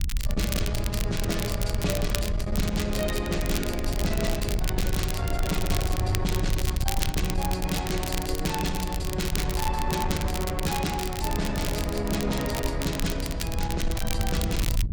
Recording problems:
distorted audio; soft clipping, signal-to-distortion ratio 13 dB
wind on the microphone; below 82 Hz, SNR 3 dB
crackle; vinyl, SNR 6 dB

